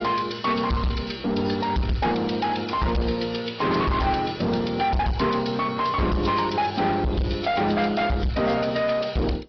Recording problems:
treble cut off; nothing above 5.3 kHz
lossy compression; AAC, log-spectral distance 5 dB
distorted audio; soft clipping, signal-to-distortion ratio 6 dB

